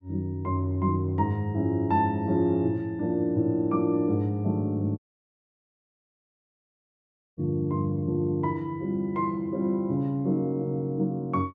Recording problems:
dropout; at 5 s for 2.5 s

